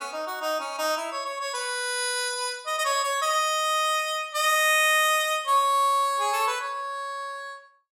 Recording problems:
none

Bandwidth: 16 kHz